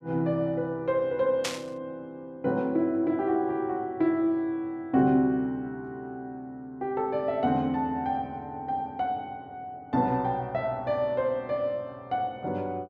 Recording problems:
static burst; at 1.5 s; peak +2 dB vs average level

